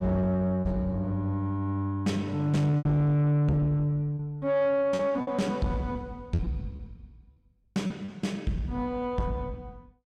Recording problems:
distortion; soft clipping, signal-to-distortion ratio 11 dB
packet loss; 6% of the sound replaced, filled with repeated pitch periods

